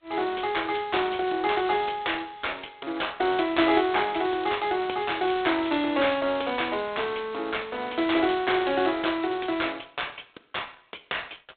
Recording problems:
telephone audio; 260 Hz to 4 kHz, G.726

